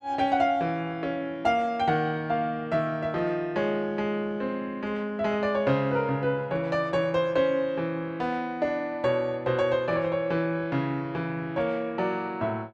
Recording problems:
none

